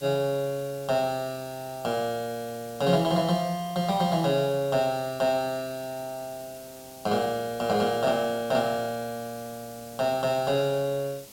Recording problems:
background hiss; SNR 19 dB

